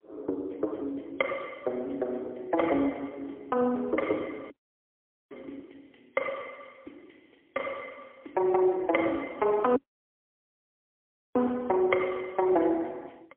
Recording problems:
phone line; 260 Hz to 3.5 kHz, AMR-NB, then MP3
audio cutting out; at 4.5 s for 1 s and at 10 s for 1.5 s

